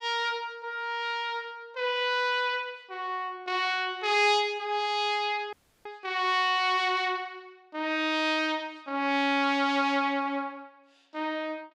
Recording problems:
dropout; at 5.5 s

